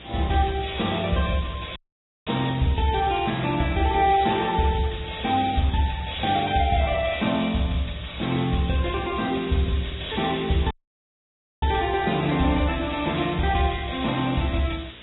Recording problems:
lossy codec; AAC, then Vorbis, log-spectral distance 11 dB, nothing above 3.8 kHz
electrical hum; 60 Hz, harmonics up to 660 Hz, SNR 24 dB
hiss; SNR 18 dB
dropout; at 2 s and at 11 s for 1 s

